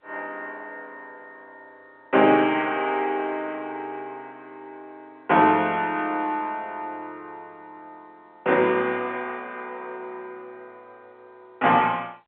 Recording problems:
telephone audio; 280 Hz to 3.3 kHz, G.711

